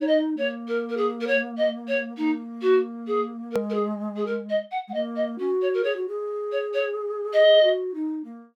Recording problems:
hard cut with a click; at 3.5 s

